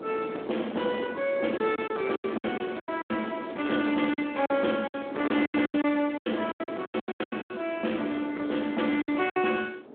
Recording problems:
phone line; 240 Hz to 3.5 kHz, Speex
distortion; soft clipping, signal-to-distortion ratio 14 dB
wind on the microphone; below 570 Hz, SNR 10 dB
lost packets; 15% of the sound replaced, filled with silence

